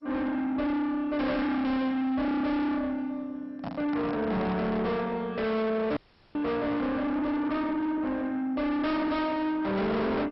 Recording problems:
codec artefacts; MP2, log-spectral distance 2 dB, nothing above 5.5 kHz
distorted audio; soft clipping, signal-to-distortion ratio 7 dB
microphone handling noise; from 3.5 to 5 s; peak -4 dB vs average level
audio cutting out; at 6 s

